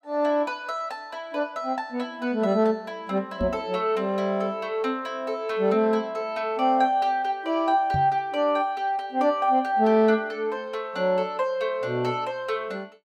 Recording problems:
knock on the microphone; at 3.5 s and at 8 s; peak 0 dB vs average level

